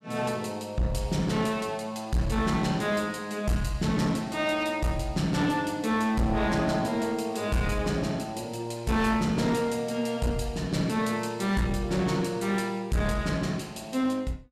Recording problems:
distortion; hard clipping, uneven, signal-to-distortion ratio 10 dB

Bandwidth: 14.5 kHz